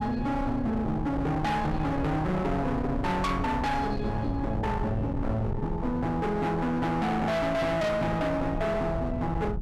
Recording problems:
distortion; hard clipping, signal-to-distortion ratio 6 dB
rumble; below 220 Hz, SNR 7 dB

